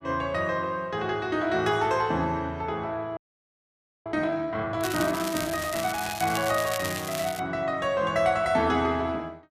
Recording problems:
frozen audio; at 3 s for 1 s
crackle; from 5 to 7.5 s; loose cable, SNR 8 dB

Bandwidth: 14.5 kHz